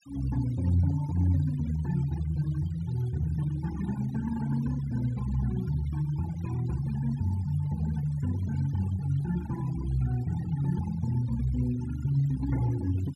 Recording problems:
noise reduction artefacts; signal-to-artefact ratio 18 dB

